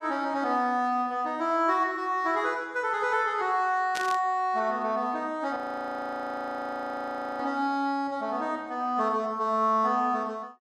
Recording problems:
burst of static; at 4 s; peak -3 dB vs average level
frozen audio; at 5.5 s for 2 s

